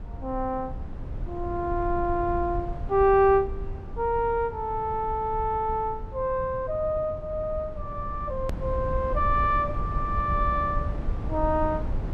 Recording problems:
rumble; below 100 Hz, SNR 8 dB
click at an edit; at 8.5 s

